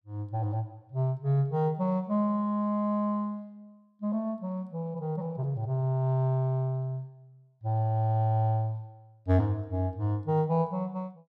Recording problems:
none

